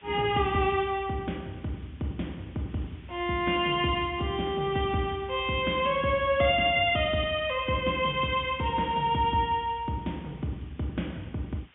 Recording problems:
low-pass filter; nothing above 3.5 kHz
hiss; SNR 27 dB

